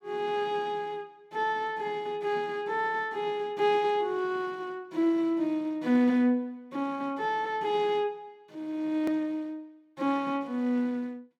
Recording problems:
hard cut with a click; at 9 s

